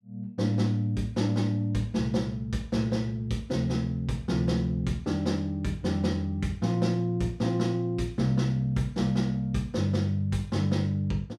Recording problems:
none

